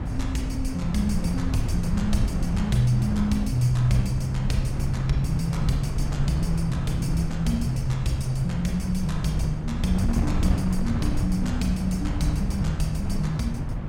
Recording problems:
wind on the microphone; below 150 Hz, SNR 2 dB

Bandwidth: 16.5 kHz